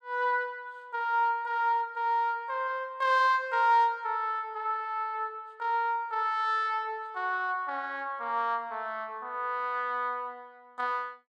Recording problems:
none

